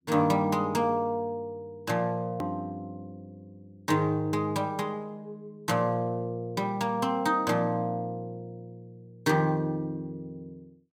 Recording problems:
hard cut with a click; at 2.5 s

